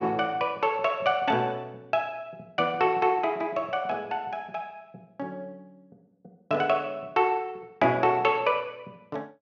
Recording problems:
none

